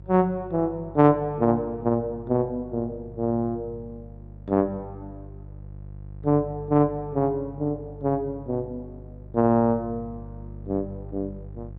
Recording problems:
hum; 50 Hz, harmonics up to 500 Hz, SNR 17 dB

